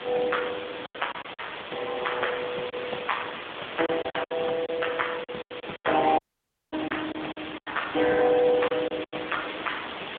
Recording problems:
telephone audio; 240 Hz to 3.5 kHz, AMR-NB
hiss; SNR 9 dB
lost packets; 9% of the sound replaced, filled with silence
crackling; at 2 s and at 7.5 s; loose cable, SNR 17 dB
dropout; at 6 s for 0.5 s

